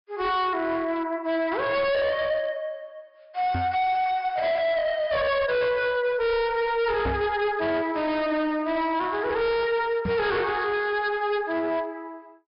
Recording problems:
treble missing; nothing above 5.5 kHz
distortion; hard clipping, uneven, signal-to-distortion ratio 7 dB
microphone thump; at 3.5 s, at 7 s and at 10 s; peak 0 dB vs average level

